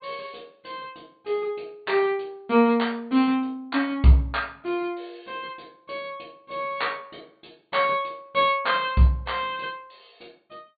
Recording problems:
low-pass filter; nothing above 4.6 kHz

